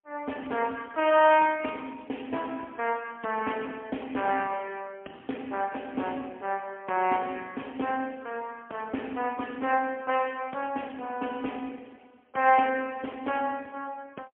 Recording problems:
telephone audio; 240 Hz to 3.3 kHz, AMR-NB, then MP3

